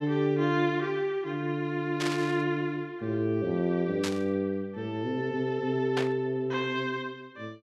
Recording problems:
static burst; at 2 s, at 4 s and at 6 s; peak 0 dB vs average level

